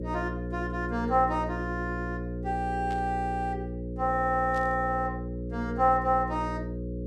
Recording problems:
hum; 60 Hz, harmonics up to 540 Hz, SNR 6 dB
static burst; at 3 s and at 4.5 s; peak -14 dB vs average level

